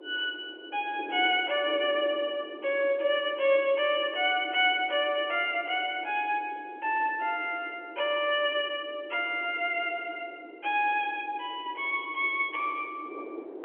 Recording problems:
phone line; 280 Hz to 3.3 kHz, G.711
wind on the microphone; below 470 Hz, SNR 17 dB

